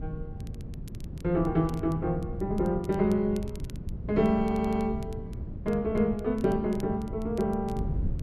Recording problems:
wind on the microphone; below 160 Hz, SNR 9 dB
crackling; vinyl, SNR 27 dB
audio stuttering; at 4.5 s

